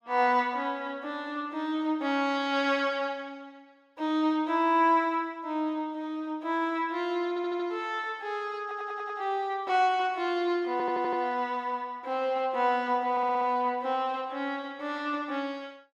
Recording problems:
stutter; 4 times, first at 7.5 s

